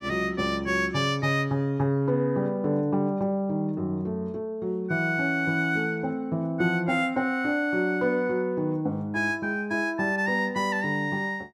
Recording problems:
none

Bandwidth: 15 kHz